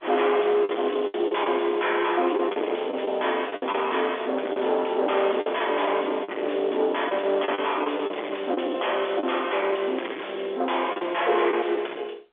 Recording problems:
phone line; 280 Hz to 3.5 kHz, G.711
distortion; soft clipping, signal-to-distortion ratio 7 dB
lost packets; 8% of the sound replaced, filled with the last packet

